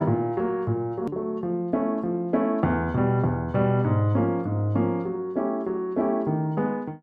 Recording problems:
hard cut with a click; at 1 s

